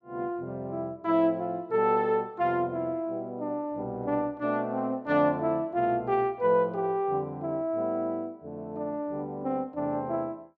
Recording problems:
none

